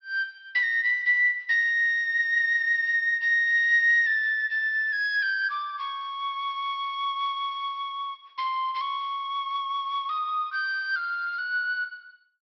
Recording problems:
treble missing; nothing above 5.7 kHz

